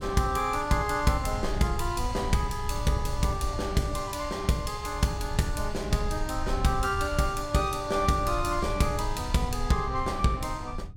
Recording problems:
rumble; below 76 Hz, SNR 8 dB

